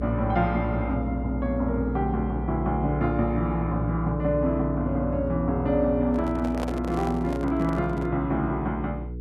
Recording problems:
hum; 60 Hz, harmonics up to 480 Hz, SNR 6 dB
handling noise; from 6 to 8 s; peak -1 dB vs average level

